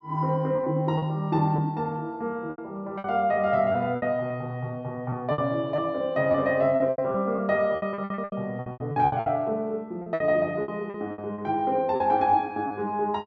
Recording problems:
packet loss; 12% of the sound replaced, filled with repeated pitch periods

